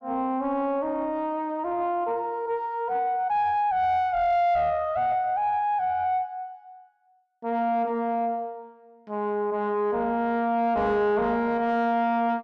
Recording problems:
distorted audio; soft clipping, signal-to-distortion ratio 11 dB

